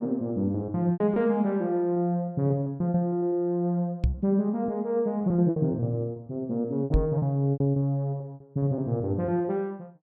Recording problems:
lost packets; 12% of the sound replaced, filled with repeated pitch periods
microphone thump; at 4 s and at 7 s; peak +6 dB vs average level

